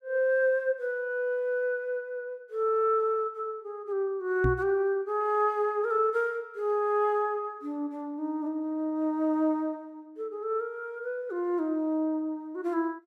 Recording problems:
microphone bump; at 4.5 s; peak +4 dB vs average level

